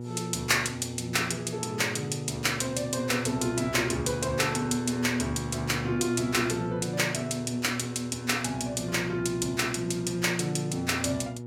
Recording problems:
hum; 60 Hz, harmonics up to 960 Hz, SNR 9 dB

